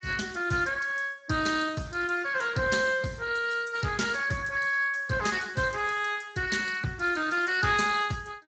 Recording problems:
lossy compression; Speex, log-spectral distance 6 dB, nothing above 7.6 kHz

